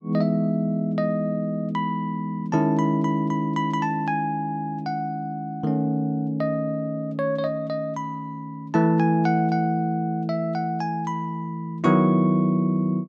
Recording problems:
none

